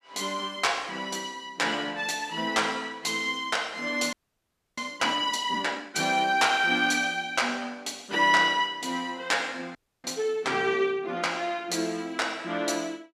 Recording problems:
audio freezing; at 4 s for 0.5 s and at 10 s

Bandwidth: 14.5 kHz